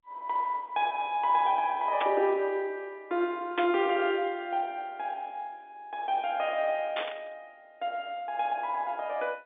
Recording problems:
phone line; 240 Hz to 3.9 kHz, G.711
static burst; at 2 s, at 3.5 s and at 7 s; peak 0 dB vs average level

